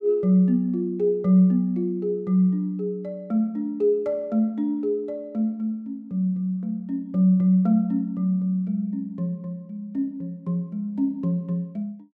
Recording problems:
none

